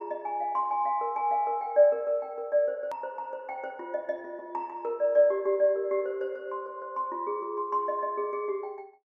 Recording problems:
hard cut with a click; at 3 s

